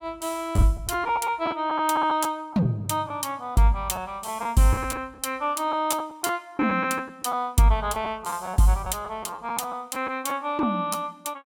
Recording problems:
lost packets; 7% of the sound replaced, filled with the last packet

